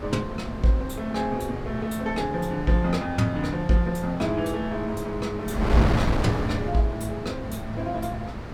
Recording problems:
wind noise; below 590 Hz, SNR 5 dB

